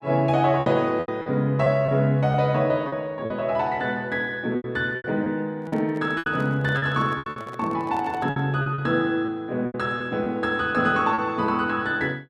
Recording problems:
lost packets; 9% of the sound replaced, filled with repeated pitch periods
microphone handling noise; from 5.5 to 8.5 s; peak -11 dB vs average level

